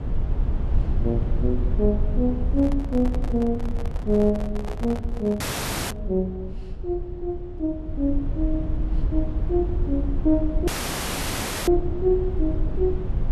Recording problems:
low-frequency rumble; below 74 Hz, SNR 3 dB
handling noise; from 2.5 to 6 s; peak -6 dB vs average level
dropout; at 5.5 s for 0.5 s and at 11 s for 1 s

